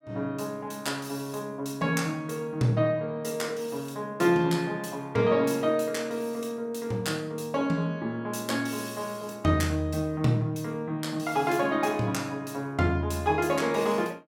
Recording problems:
none

